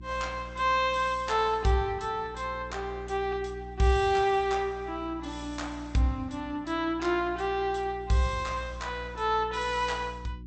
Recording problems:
treble missing; nothing above 8 kHz
electrical hum; 60 Hz, harmonics up to 360 Hz, SNR 16 dB

